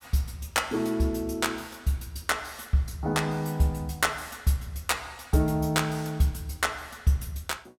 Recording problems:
none

